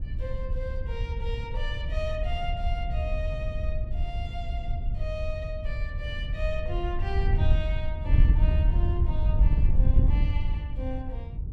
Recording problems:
wind on the microphone; below 76 Hz, SNR -9 dB

